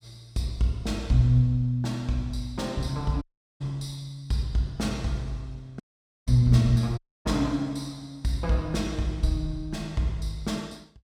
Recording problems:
dropout; at 3 s, at 6 s and at 7 s

